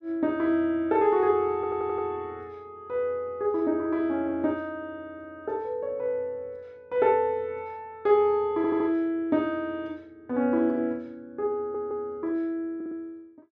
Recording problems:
audio stuttering; 4 times, first at 1.5 s

